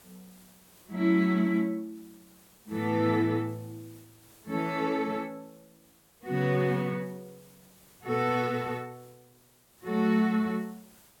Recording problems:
hiss; slope -3 dB per octave, SNR 28 dB

